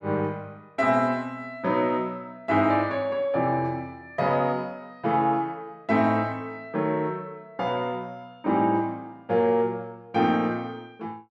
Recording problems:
none

